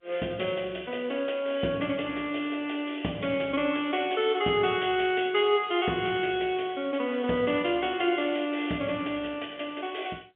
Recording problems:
telephone audio; 190 Hz to 3.5 kHz, G.711

